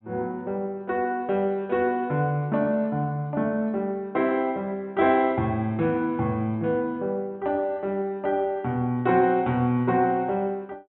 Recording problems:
low-pass filter; nothing above 4 kHz

